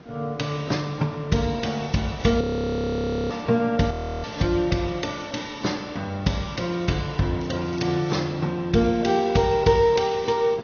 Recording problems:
low-pass filter; nothing above 6.3 kHz
lossy codec; AAC, log-spectral distance 4 dB
hiss; slope -7 dB per octave, SNR 20 dB
frozen audio; at 2.5 s for 1 s and at 4 s
crackle; at 3.5 s and at 7.5 s; loose cable, SNR 27 dB

